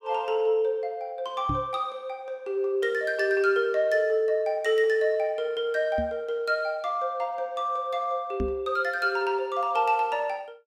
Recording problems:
knock on the microphone; at 1.5 s, at 6 s and at 8.5 s; peak -1 dB vs average level

